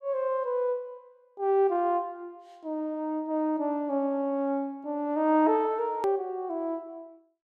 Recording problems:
edit click; at 6 s

